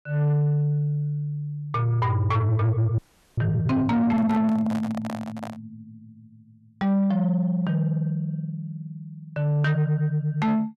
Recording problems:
distorted audio; soft clipping, signal-to-distortion ratio 11 dB
frozen audio; at 3 s
handling noise; from 4 to 5.5 s; peak -7 dB vs average level

